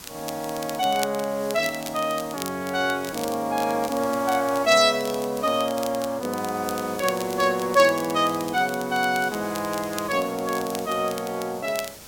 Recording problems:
hiss; slope -2 dB per octave, SNR 17 dB
crackling; vinyl, SNR 15 dB

